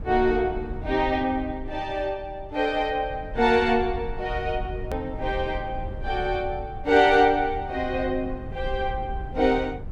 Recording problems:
rumble; below 100 Hz, SNR 12 dB
edit click; at 5 s

